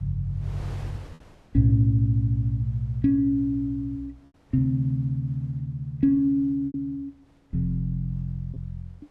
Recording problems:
wind on the microphone; below 820 Hz, SNR 26 dB
lost packets; 1.3% of the sound replaced, filled with repeated pitch periods

